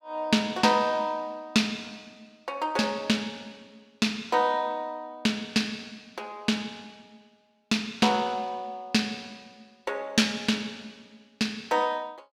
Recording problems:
none

